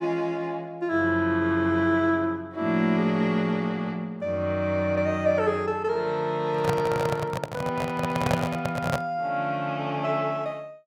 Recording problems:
microphone handling noise; from 6.5 to 9 s; peak +4 dB vs average level

